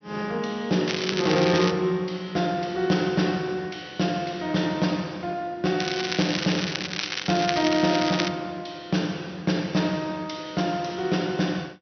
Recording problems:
treble cut off; nothing above 6.1 kHz
crackle; at 1 s and from 6 to 8.5 s; loose cable, SNR 4 dB

